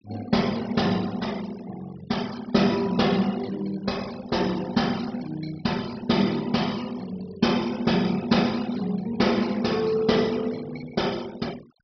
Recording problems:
low-pass filter; nothing above 5.5 kHz
noise reduction artefacts; signal-to-artefact ratio 17 dB

